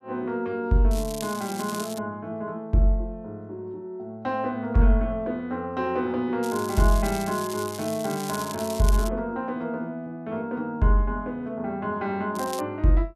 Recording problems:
crackle; from 1 to 2 s, from 6.5 to 9 s and at 12 s; loose cable, SNR 11 dB

